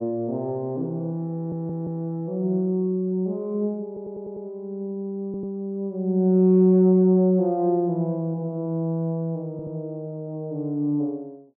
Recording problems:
stutter; 4 times, first at 1.5 s

